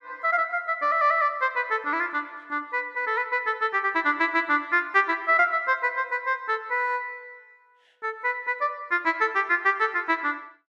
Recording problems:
none

